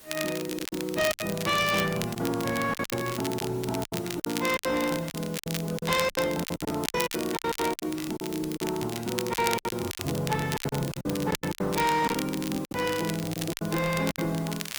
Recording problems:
codec artefacts; Opus, log-spectral distance 5 dB, nothing above 19 kHz
distorted audio; hard clipping, uneven, signal-to-distortion ratio 10 dB
hiss; slope -1 dB per octave, SNR 19 dB
crackle; vinyl, SNR 8 dB
lost packets; 15% of the sound replaced, filled with silence

